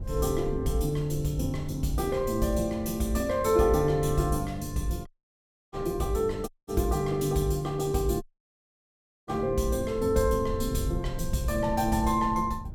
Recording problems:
wind on the microphone; below 98 Hz, SNR 12 dB
dropout; at 5 s for 0.5 s, at 6.5 s and at 8 s for 1 s

